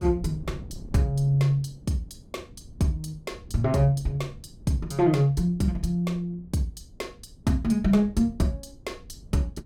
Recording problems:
wind on the microphone; below 170 Hz, SNR 20 dB

